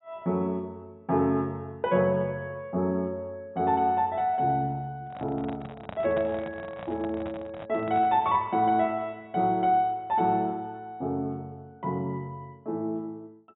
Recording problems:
treble cut off; nothing above 3.8 kHz
handling noise; from 5 to 8.5 s; peak -4 dB vs average level

